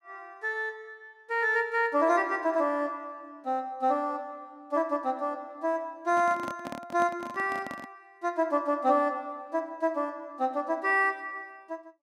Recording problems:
microphone handling noise; from 6 to 8 s; peak -6 dB vs average level

